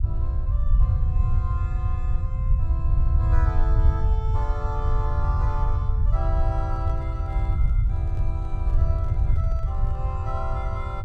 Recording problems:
rumble; below 84 Hz, SNR -12 dB
microphone handling noise; from 6.5 to 10 s; peak -7 dB vs average level

